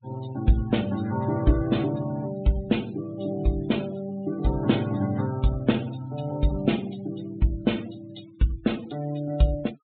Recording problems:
low-pass filter; nothing above 4 kHz
noise reduction artefacts; signal-to-artefact ratio 19 dB

